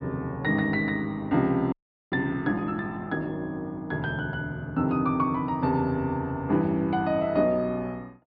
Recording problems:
treble cut off; nothing above 5.5 kHz
frozen audio; at 1.5 s

